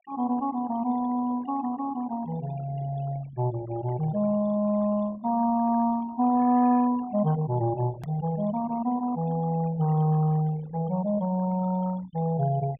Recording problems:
low-pass filter; nothing above 3.6 kHz
noise reduction artefacts; signal-to-artefact ratio 20 dB
edit click; at 8 s

